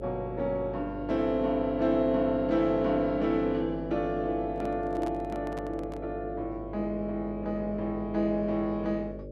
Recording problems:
hum; 50 Hz, harmonics up to 600 Hz, SNR 11 dB
microphone handling noise; from 4.5 to 6 s; peak -8 dB vs average level

